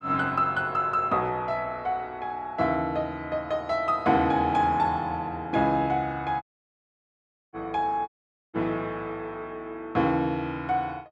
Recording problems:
dropout; at 6.5 s for 1 s and at 8 s

